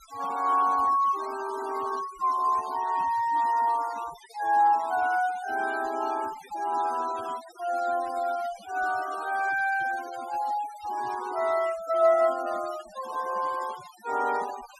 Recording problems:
noise reduction artefacts; signal-to-artefact ratio 17 dB

